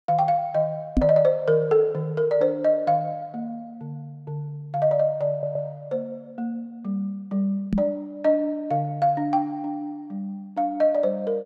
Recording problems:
microphone bump; at 1 s and at 7.5 s; peak +7 dB vs average level
stutter; at 5.5 s

